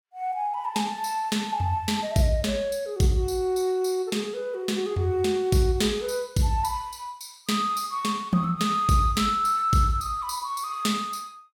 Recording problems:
none

